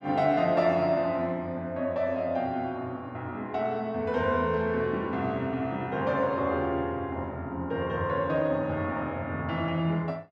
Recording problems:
none

